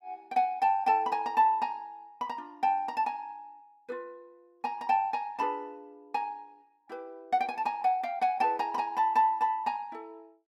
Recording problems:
none

